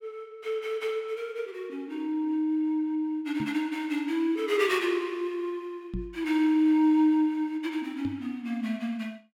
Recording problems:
microphone bump; at 3.5 s, at 6 s and at 8 s; peak -3 dB vs average level

